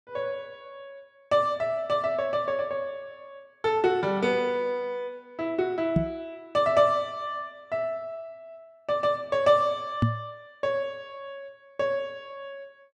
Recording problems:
microphone bump; at 6 s and at 10 s; peak +7 dB vs average level

